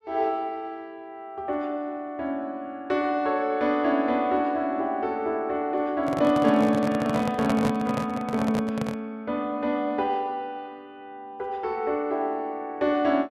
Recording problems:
handling noise; from 6 to 9 s; peak +1 dB vs average level

